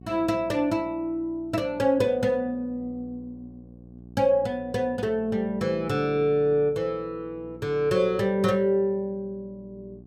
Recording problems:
hum; 60 Hz, harmonics up to 720 Hz, SNR 21 dB

